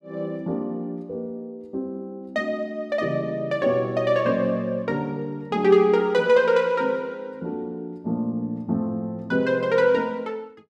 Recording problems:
none

